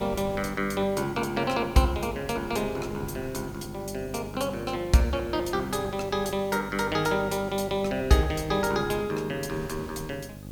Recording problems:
hum; 50 Hz, harmonics up to 850 Hz, SNR 14 dB
background hiss; slope +2 dB per octave, SNR 25 dB
wind noise; below 330 Hz, SNR 20 dB

